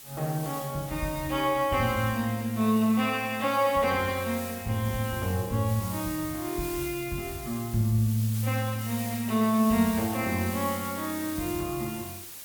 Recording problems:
background hiss; slope +1 dB per octave, SNR 11 dB

